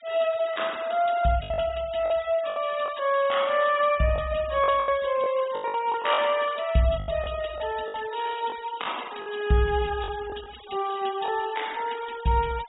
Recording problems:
low-pass filter; nothing above 4 kHz
noise reduction artefacts; signal-to-artefact ratio 18 dB
packet loss; 8% of the sound replaced, filled with the last packet

